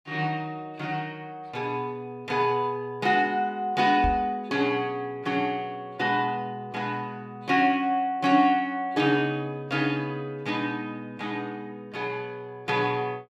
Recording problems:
knock on the microphone; at 4 s; peak 0 dB vs average level

